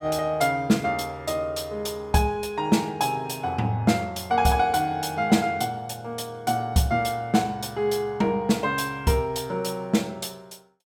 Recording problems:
none

